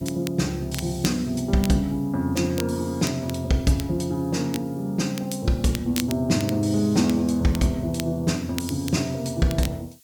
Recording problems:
hiss; slope +6 dB per octave, SNR 27 dB
crackling; vinyl, SNR 14 dB

